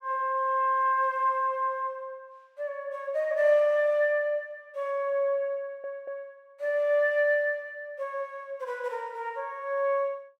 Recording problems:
audio stuttering; at 5.5 s

